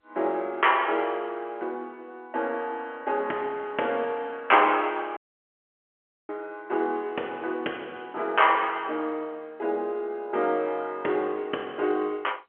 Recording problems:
telephone audio; 280 Hz to 3.3 kHz, G.711
audio cutting out; at 5 s for 1 s

